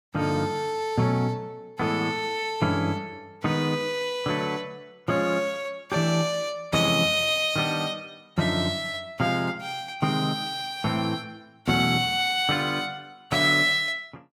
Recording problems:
none

